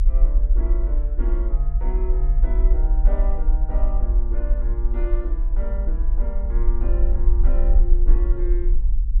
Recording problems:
rumble; below 46 Hz, strongest tone 32 Hz, SNR -13 dB

